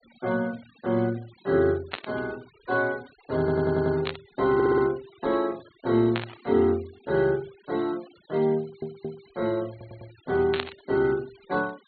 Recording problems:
treble cut off; nothing above 4.4 kHz
denoising artefacts; signal-to-artefact ratio 24 dB
static burst; 4 times, first at 2 s; peak +1 dB vs average level
audio stuttering; 4 times, first at 3.5 s

